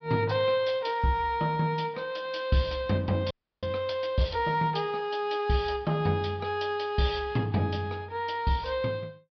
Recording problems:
low-pass filter; nothing above 5.5 kHz
audio freezing; at 3.5 s

